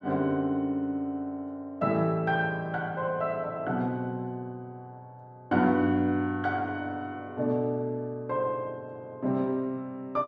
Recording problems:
none

